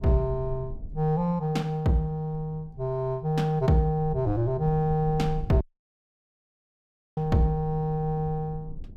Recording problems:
low-frequency rumble; below 78 Hz, SNR 15 dB
dropout; at 5.5 s for 1.5 s

